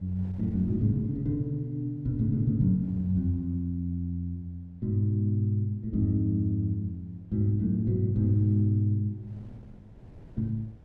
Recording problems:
wind noise; below 210 Hz, SNR 25 dB

